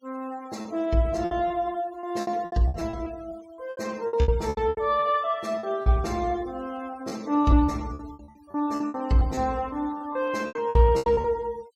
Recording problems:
noise reduction artefacts; signal-to-artefact ratio 24 dB
packet loss; 15% of the sound replaced, filled with repeated pitch periods

